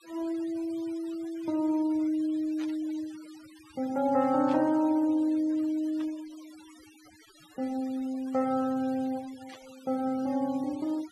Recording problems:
denoising artefacts; signal-to-artefact ratio 23 dB
burst of static; 4 times, first at 2.5 s; peak -16 dB vs average level

